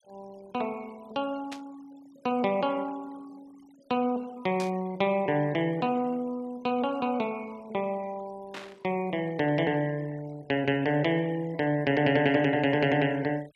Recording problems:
noise reduction artefacts; signal-to-artefact ratio 26 dB
burst of static; at 1.5 s, at 4.5 s and at 8.5 s; peak -8 dB vs average level

